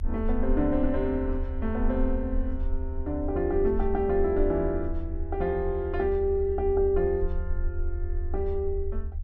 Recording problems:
rumble; below 76 Hz, SNR 6 dB

